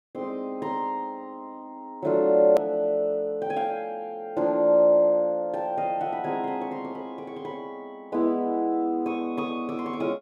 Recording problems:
edit click; at 2.5 s

